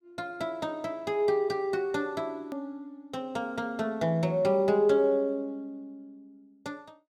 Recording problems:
edit click; at 2.5 s

